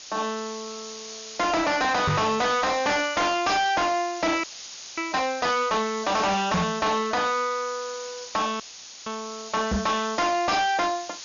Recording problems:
treble missing; nothing above 6.9 kHz
distorted audio; hard clipping, signal-to-distortion ratio 6 dB
hiss; slope +3 dB per octave, SNR 13 dB
knock on the microphone; at 2 s, at 6.5 s and at 9.5 s; peak +5 dB vs average level
audio freezing; at 4.5 s for 0.5 s and at 8.5 s

